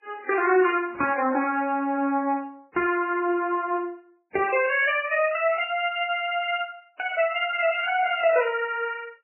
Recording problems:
lossy compression; MP3, then MP3, log-spectral distance 3 dB, nothing above 2.4 kHz

